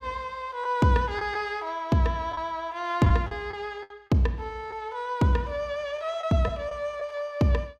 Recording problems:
lost packets; 4% of the sound replaced, filled with the last packet

